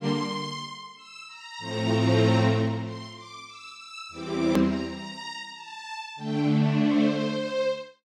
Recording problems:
hard cut with a click; at 4.5 s

